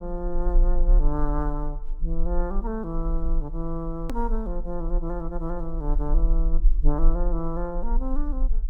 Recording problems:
low-frequency rumble; below 38 Hz, strongest tone 20 Hz, SNR -3 dB
edit click; at 4 s

